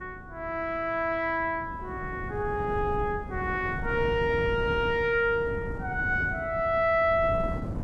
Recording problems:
wind on the microphone; below 240 Hz, SNR 10 dB

